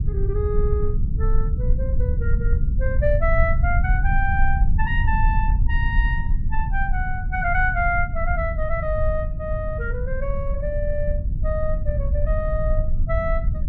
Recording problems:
low-frequency rumble; below 70 Hz, SNR -3 dB

